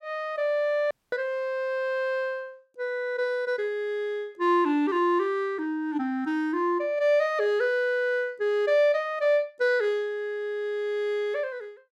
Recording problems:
dropout; at 1 s

